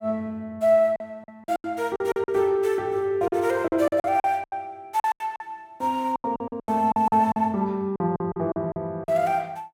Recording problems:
packet loss; 14% of the sound replaced, filled with silence

